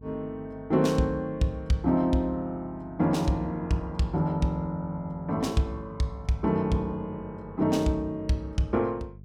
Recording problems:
electrical hum; 50 Hz, harmonics up to 450 Hz, SNR 20 dB

